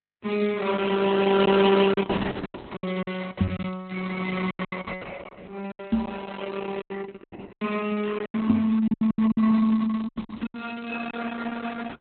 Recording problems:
codec artefacts; Opus, log-spectral distance 6 dB
packet loss; 11% of the sound replaced, filled with silence
crackling; from 2 to 5 s and from 9.5 to 11 s; loose cable, SNR 27 dB
microphone thump; at 3.5 s, at 6 s and at 8.5 s; peak +6 dB vs average level

